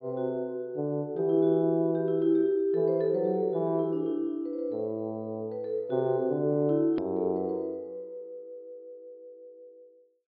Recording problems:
treble missing; nothing above 5.1 kHz
click at an edit; at 7 s

